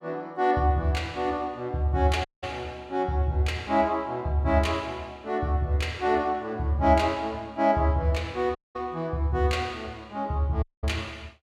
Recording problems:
audio cutting out; at 2.5 s, at 8.5 s and at 11 s

